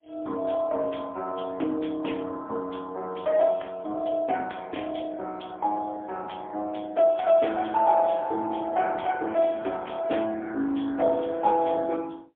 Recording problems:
telephone audio; 240 Hz to 3.4 kHz, AMR-NB, then MP3

